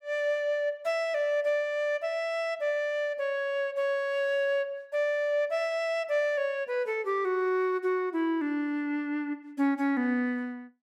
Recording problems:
none

